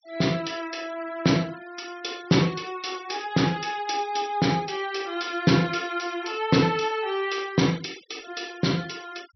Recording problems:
treble missing; nothing above 5.8 kHz
denoising artefacts; signal-to-artefact ratio 21 dB

